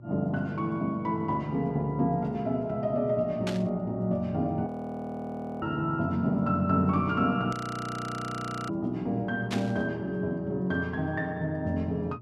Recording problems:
hum; 60 Hz, harmonics up to 600 Hz, SNR 19 dB
burst of static; at 3.5 s, at 7.5 s and at 9.5 s; peak -1 dB vs average level
audio freezing; at 4.5 s for 1 s and at 7.5 s for 1 s

